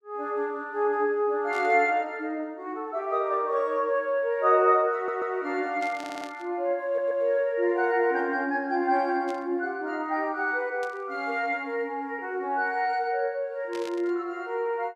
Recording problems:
burst of static; 5 times, first at 1.5 s; peak -12 dB vs average level
audio stuttering; at 5 s, at 6 s and at 7 s

